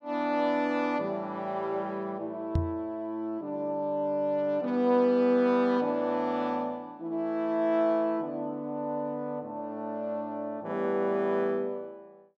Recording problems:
microphone bump; at 2.5 s; peak +5 dB vs average level

